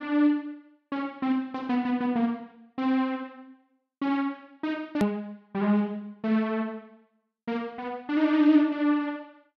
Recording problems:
hard cut with a click; at 5 s

